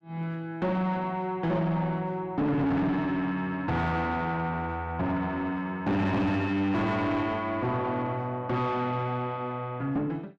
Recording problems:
distortion; soft clipping, signal-to-distortion ratio 6 dB

